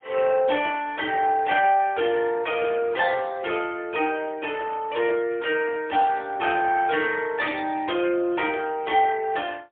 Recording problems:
phone line; 300 Hz to 3.5 kHz, AMR-NB, then MP3

